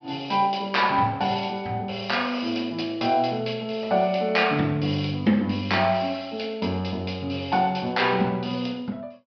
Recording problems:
treble cut off; nothing above 5.5 kHz

